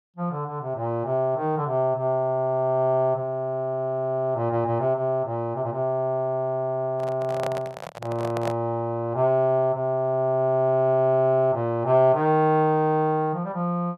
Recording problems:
handling noise; from 7 to 8.5 s; peak -4 dB vs average level

